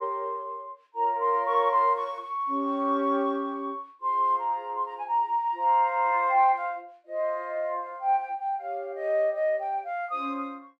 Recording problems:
none

